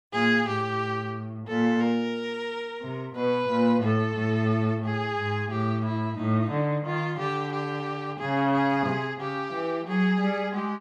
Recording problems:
none

